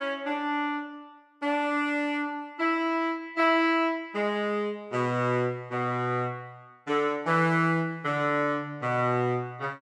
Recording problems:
none

